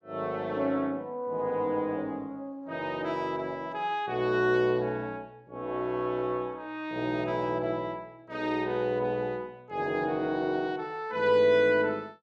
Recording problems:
none

